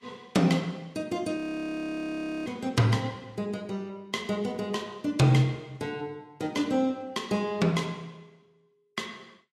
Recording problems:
lossy compression; Vorbis, log-spectral distance 2 dB, nothing above 18.9 kHz
audio freezing; at 1.5 s for 1 s

